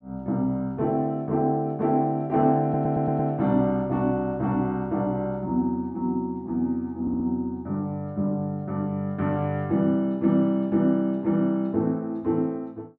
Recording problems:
stutter; at 2.5 s and at 7 s

